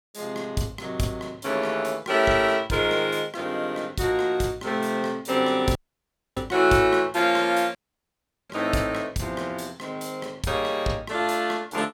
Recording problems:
dropout; at 6 s for 0.5 s and at 8 s for 0.5 s

